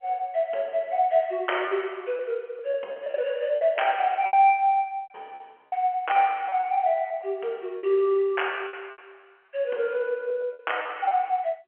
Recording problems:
telephone audio; 320 Hz to 3.2 kHz, G.711
packet loss; 9% of the sound replaced, filled with repeated pitch periods

